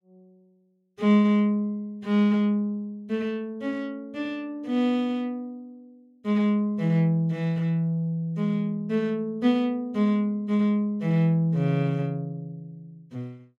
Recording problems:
none

